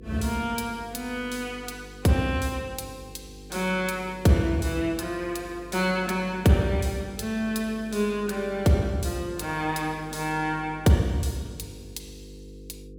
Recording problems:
mains hum; 50 Hz, harmonics up to 500 Hz, SNR 19 dB

